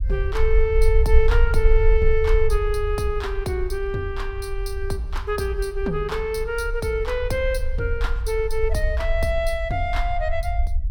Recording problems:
low-frequency rumble; below 56 Hz, strongest tone 20 Hz, SNR 1 dB

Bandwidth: 17.5 kHz